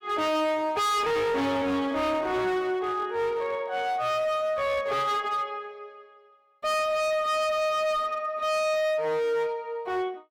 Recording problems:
distortion; hard clipping, signal-to-distortion ratio 6 dB

